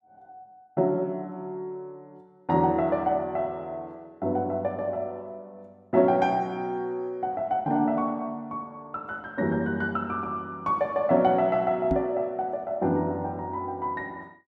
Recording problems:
microphone bump; at 12 s; peak +3 dB vs average level

